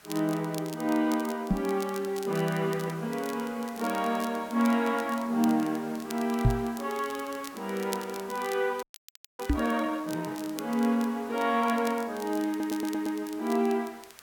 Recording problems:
background hiss; SNR 21 dB
crackling; vinyl, SNR 17 dB
microphone bump; at 1.5 s, at 6.5 s and at 9.5 s; peak +9 dB vs average level
frozen audio; at 9 s for 0.5 s
audio stuttering; at 12 s

